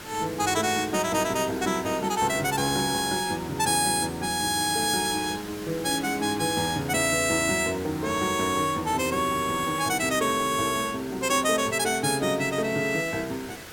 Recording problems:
background hiss; slope -3 dB per octave, SNR 15 dB

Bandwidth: 17 kHz